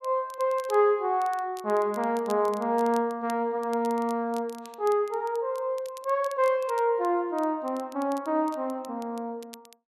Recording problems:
crackling; vinyl, SNR 24 dB

